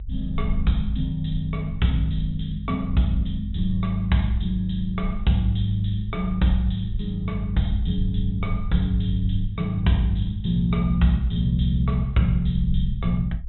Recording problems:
treble missing; nothing above 3.9 kHz
rumble; below 54 Hz, SNR 9 dB

